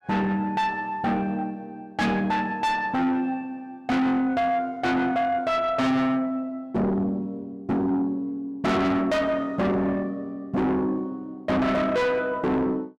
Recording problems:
distortion; soft clipping, signal-to-distortion ratio 6 dB

